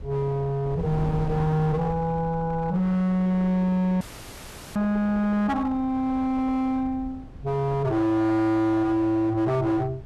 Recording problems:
distorted audio; hard clipping, signal-to-distortion ratio 10 dB
wind noise; below 160 Hz, SNR 15 dB
dropout; at 4 s for 0.5 s

